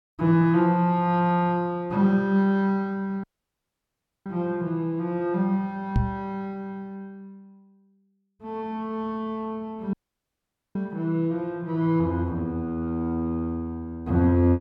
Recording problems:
audio cutting out; at 3 s for 1 s and at 10 s for 1 s
microphone bump; at 6 s; peak +5 dB vs average level

